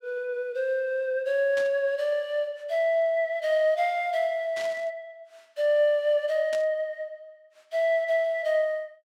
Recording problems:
static burst; at 1.5 s, at 4.5 s and at 6.5 s; peak -9 dB vs average level

